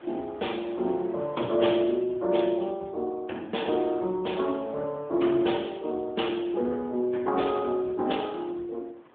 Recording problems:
phone line; 260 Hz to 3.5 kHz, AMR-NB
wind noise; below 1.3 kHz, SNR 24 dB

